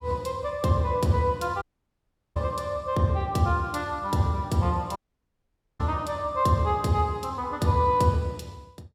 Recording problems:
audio cutting out; at 1.5 s for 0.5 s and at 5 s for 1 s

